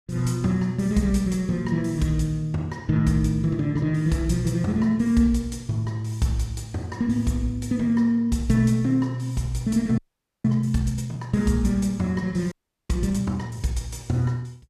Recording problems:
audio freezing; at 10 s and at 13 s

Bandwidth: 14.5 kHz